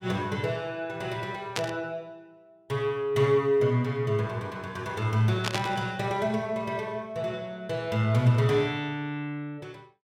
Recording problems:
static burst; at 1.5 s and at 5.5 s; peak +3 dB vs average level

